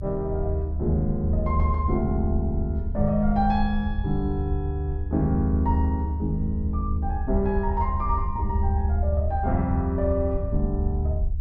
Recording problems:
low-frequency rumble; below 76 Hz, strongest tone 74 Hz, SNR 1 dB

